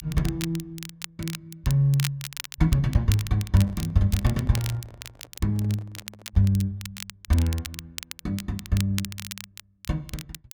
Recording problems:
crackle; vinyl, SNR 13 dB
microphone handling noise; from 3.5 to 6.5 s; peak -12 dB vs average level

